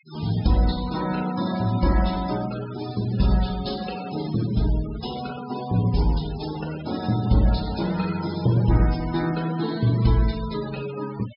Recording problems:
treble missing; nothing above 5.5 kHz
noise reduction artefacts; signal-to-artefact ratio 16 dB

